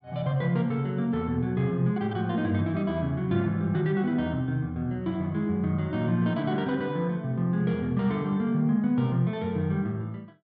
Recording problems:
none

